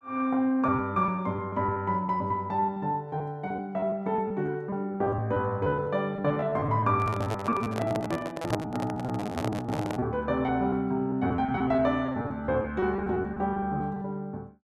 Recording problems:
packet loss; 15% of the sound replaced, filled with repeated pitch periods
handling noise; from 7 to 10 s; peak +3 dB vs average level

